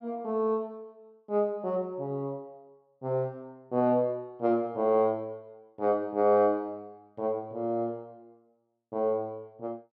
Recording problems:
none

